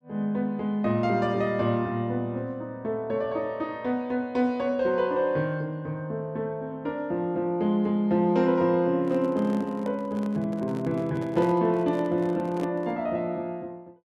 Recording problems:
microphone handling noise; from 9 to 13 s; peak -6 dB vs average level

